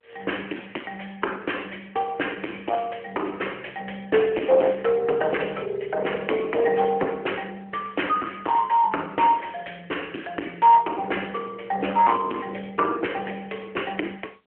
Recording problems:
telephone audio; 240 Hz to 3.1 kHz, AMR-NB
distorted audio; soft clipping, signal-to-distortion ratio 10 dB

